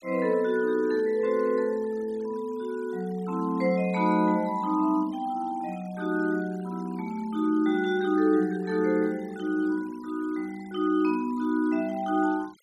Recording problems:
denoising artefacts; signal-to-artefact ratio 25 dB

